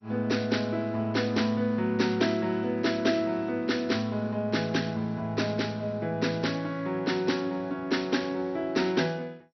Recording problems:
codec artefacts; MP2, log-spectral distance 3 dB, nothing above 5.8 kHz

